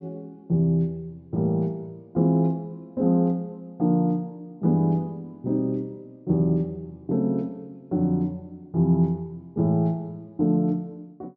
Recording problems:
treble cut off; nothing above 8 kHz

